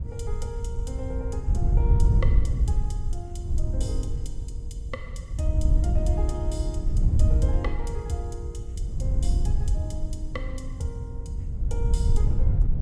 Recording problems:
wind noise; below 80 Hz, SNR -10 dB

